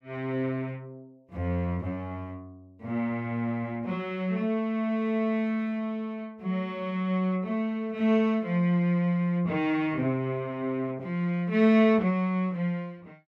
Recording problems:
none

